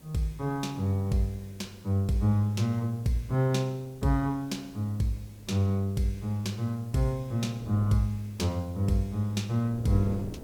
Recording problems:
background hiss; slope -3 dB per octave, SNR 28 dB
wind noise; below 370 Hz, SNR 21 dB

